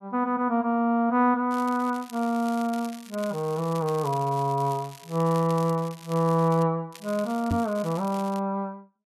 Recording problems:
crackling; from 1.5 to 6.5 s and from 7 to 8.5 s; loose cable, SNR 20 dB
microphone thump; at 7.5 s; peak +1 dB vs average level

